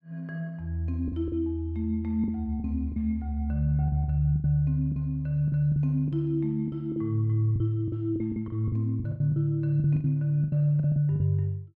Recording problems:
packet loss; 11% of the sound replaced, filled with the last packet

